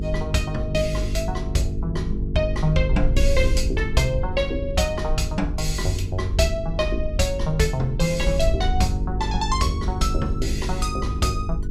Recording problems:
electrical hum; 50 Hz, harmonics up to 450 Hz, SNR 7 dB
wind noise; below 64 Hz, SNR 5 dB

